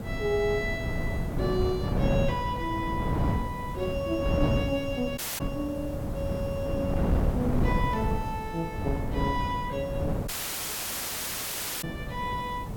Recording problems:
hiss; SNR 20 dB
wind on the microphone; below 260 Hz, SNR -1 dB
dropout; at 5 s and at 10 s for 1.5 s

